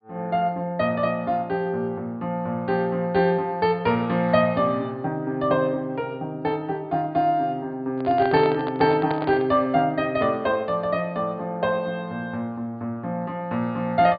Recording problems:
treble missing; nothing above 4.8 kHz
microphone handling noise; from 8 to 9.5 s; peak -3 dB vs average level

